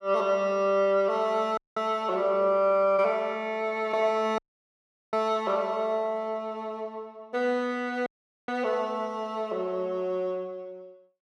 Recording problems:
audio cutting out; at 1.5 s, at 4.5 s for 1 s and at 8 s

